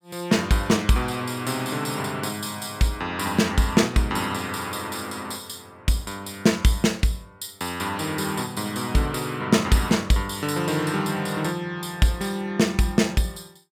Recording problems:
none

